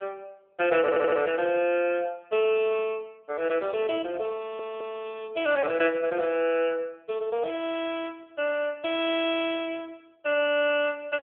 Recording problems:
phone line; 370 Hz to 3.4 kHz, AMR-NB
audio stuttering; at 1 s and at 4.5 s

